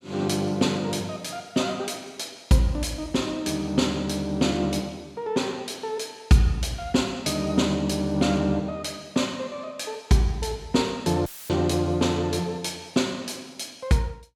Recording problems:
audio cutting out; at 11 s; filled with static

